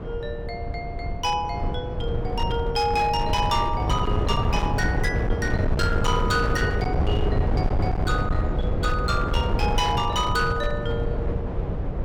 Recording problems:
distortion; hard clipping, signal-to-distortion ratio 12 dB
wind on the microphone; below 230 Hz, SNR 0 dB

